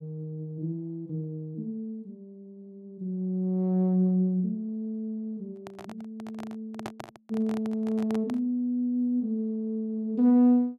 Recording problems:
microphone handling noise; from 5.5 to 8.5 s; peak -5 dB vs average level

